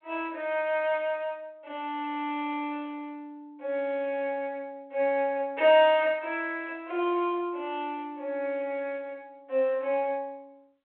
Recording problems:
telephone audio; 320 Hz to 3.2 kHz, G.726

